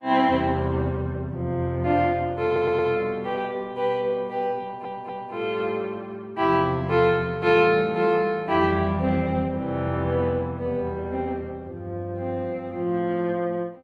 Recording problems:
lossy compression; Opus, log-spectral distance 2 dB
stutter; at 2.5 s and at 4.5 s

